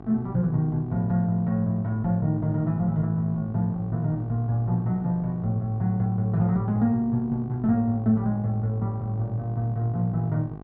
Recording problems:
hum; 50 Hz, harmonics up to 1.6 kHz, SNR 17 dB

